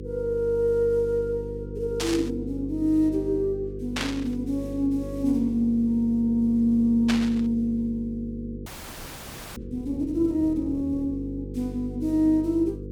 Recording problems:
hum; 50 Hz, harmonics up to 500 Hz, SNR 11 dB
burst of static; at 2 s, at 4 s and at 7 s; peak +1 dB vs average level
frozen audio; at 8.5 s for 1 s

